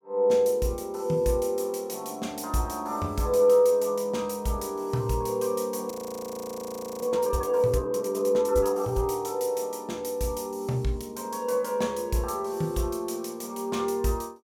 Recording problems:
frozen audio; at 6 s for 1 s

